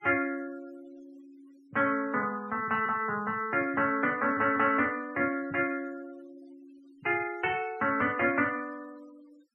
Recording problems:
noise reduction artefacts; signal-to-artefact ratio 24 dB

